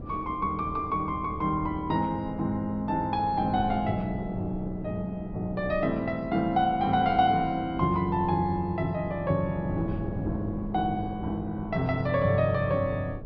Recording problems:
treble cut off; nothing above 5.5 kHz
wind on the microphone; below 320 Hz, SNR 12 dB

